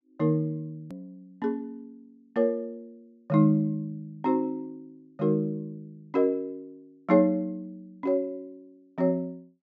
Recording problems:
treble cut off; nothing above 8 kHz
edit click; at 1 s

